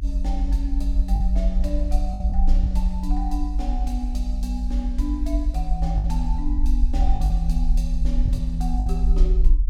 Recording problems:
low-frequency rumble; below 52 Hz, SNR -7 dB
packet loss; 4% of the sound replaced, filled with the last packet

